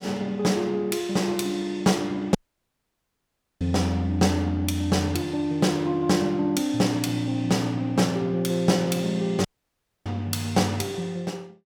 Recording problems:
dropout; at 2.5 s for 1.5 s and at 9.5 s for 0.5 s

